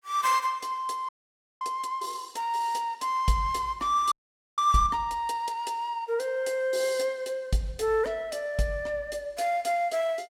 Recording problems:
audio freezing; at 1 s for 0.5 s and at 4 s

